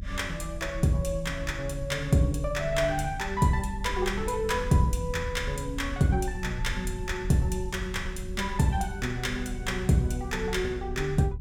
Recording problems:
low-frequency rumble; below 76 Hz, SNR 9 dB

